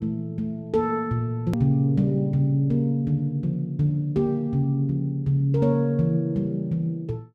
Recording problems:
click at an edit; at 1.5 s

